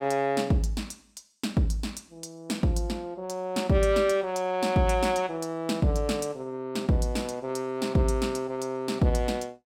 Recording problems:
none

